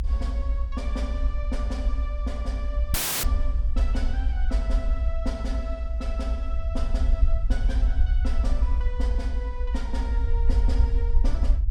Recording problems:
low-frequency rumble; below 60 Hz, SNR -10 dB
audio cutting out; at 3 s

